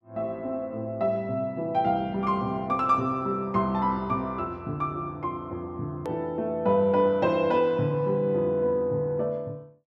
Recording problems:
click at an edit; at 6 s

